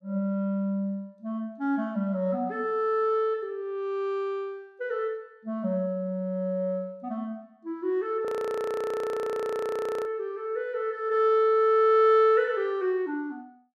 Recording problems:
frozen audio; at 8.5 s for 2 s

